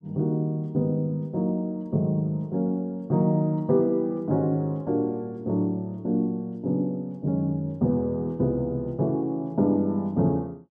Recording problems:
none

